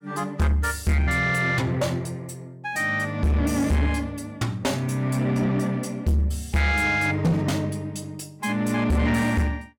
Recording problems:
distorted audio; soft clipping, signal-to-distortion ratio 8 dB

